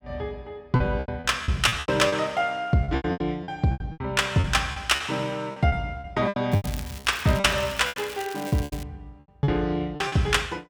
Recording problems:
packet loss; 15% of the sound replaced, filled with repeated pitch periods
crackling; from 6.5 to 9 s; loose cable, SNR 16 dB

